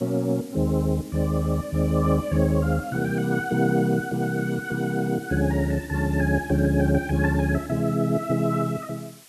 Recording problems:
background hiss; slope +1 dB per octave, SNR 23 dB

